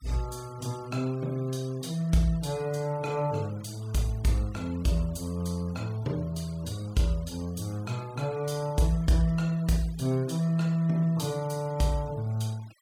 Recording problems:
noise reduction artefacts; signal-to-artefact ratio 23 dB

